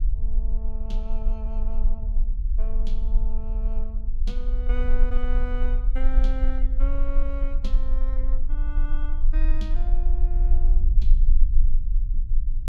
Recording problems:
rumble; below 36 Hz, strongest tone 18 Hz, SNR -13 dB

